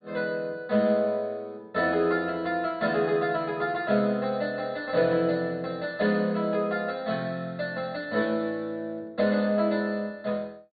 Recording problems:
treble cut off; nothing above 4.5 kHz

